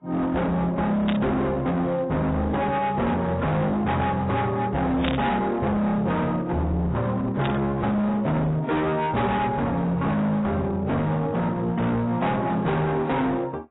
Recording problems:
lossy codec; AAC, log-spectral distance 2 dB, nothing above 3.8 kHz
distortion; hard clipping, signal-to-distortion ratio 7 dB
static burst; at 1 s, at 5 s and at 7.5 s; peak 0 dB vs average level

